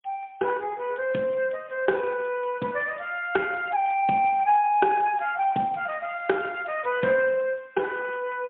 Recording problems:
telephone audio; 170 Hz to 3.5 kHz, AMR-NB, then MP3

